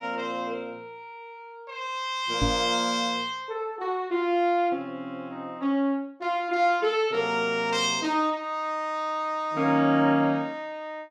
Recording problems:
microphone thump; at 2.5 s; peak +3 dB vs average level

